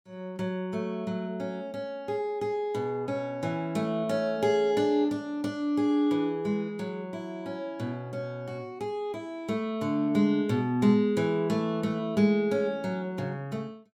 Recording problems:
none

